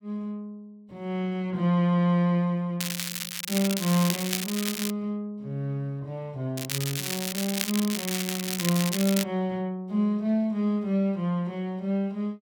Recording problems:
crackling; from 3 to 5 s and from 6.5 to 9 s; loose cable, SNR 3 dB

